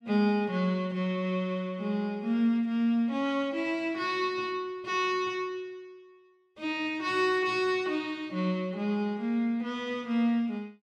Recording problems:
none

